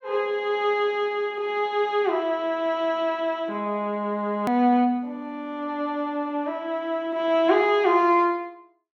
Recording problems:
click at an edit; at 4.5 s

